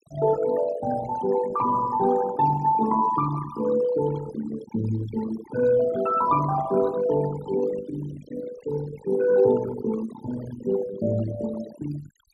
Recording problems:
noise reduction artefacts; signal-to-artefact ratio 13 dB

